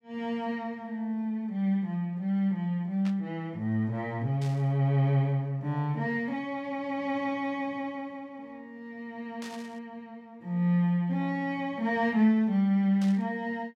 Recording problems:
static burst; 4 times, first at 3 s; peak -12 dB vs average level

